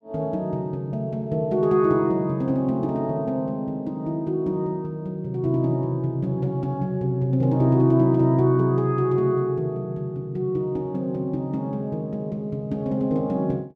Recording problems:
none

